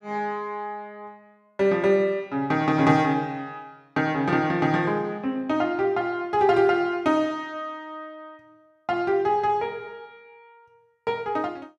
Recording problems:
none

